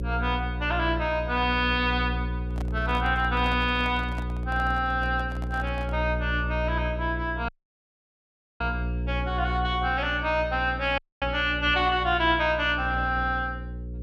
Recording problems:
electrical hum; 60 Hz, harmonics up to 540 Hz, SNR 6 dB
microphone handling noise; from 2.5 to 6 s; peak -10 dB vs average level
audio cutting out; at 7.5 s for 1 s and at 11 s

